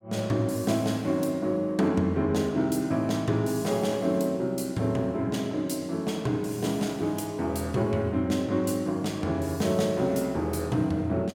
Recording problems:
none

